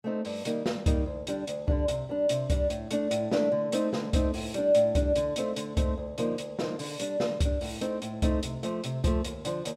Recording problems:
none

